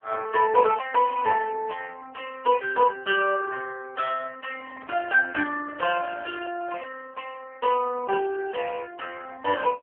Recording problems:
phone line; 300 Hz to 2.6 kHz, AMR-NB
microphone handling noise; from 4.5 to 7 s; peak -12 dB vs average level

